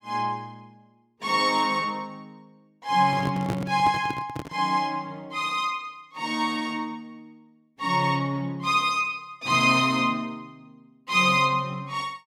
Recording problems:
handling noise; from 3 to 4.5 s; peak 0 dB vs average level

